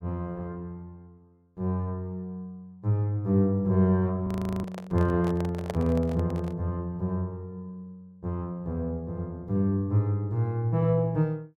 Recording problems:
frozen audio; at 4.5 s
handling noise; from 4.5 to 6.5 s; peak -2 dB vs average level

